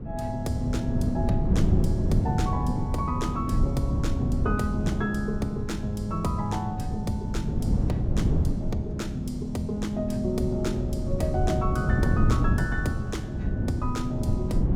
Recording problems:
wind on the microphone; below 180 Hz, SNR -2 dB

